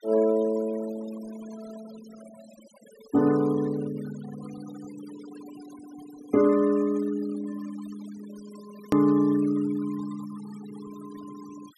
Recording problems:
denoising artefacts; signal-to-artefact ratio 20 dB
edit click; at 9 s

